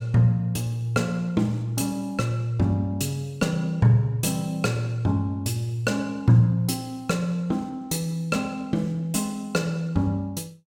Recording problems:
none

